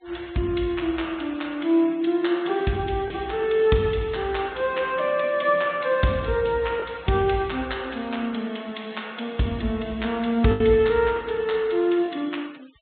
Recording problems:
low-pass filter; nothing above 4 kHz
noise reduction artefacts; signal-to-artefact ratio 24 dB
packet loss; 1.1% of the sound replaced, filled with the last packet

